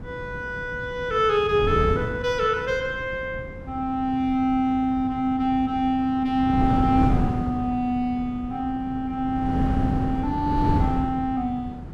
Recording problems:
wind on the microphone; below 250 Hz, SNR 6 dB

